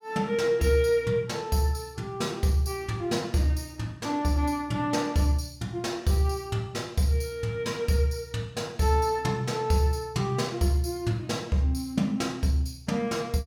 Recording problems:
none

